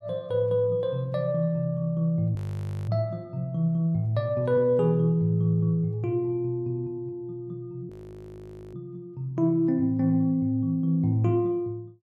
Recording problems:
audio freezing; at 2.5 s for 0.5 s and at 8 s for 1 s

